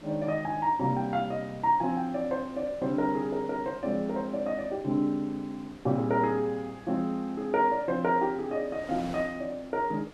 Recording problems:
wind noise; below 1.9 kHz, SNR 20 dB

